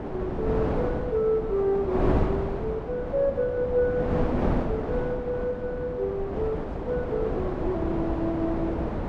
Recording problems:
wind on the microphone; below 560 Hz, SNR 2 dB

